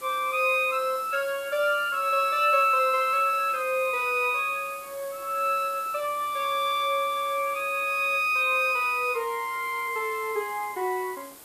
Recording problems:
background hiss; slope -3 dB per octave, SNR 19 dB

